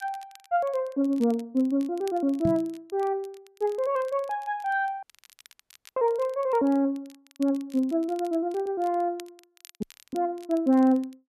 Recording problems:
crackle; vinyl, SNR 27 dB
microphone thump; at 2.5 s; peak +1 dB vs average level
audio cutting out; at 5 s for 1 s and at 10 s

